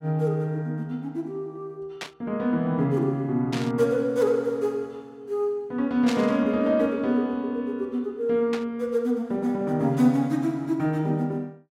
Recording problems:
static burst; 4 times, first at 2 s; peak -2 dB vs average level

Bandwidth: 16 kHz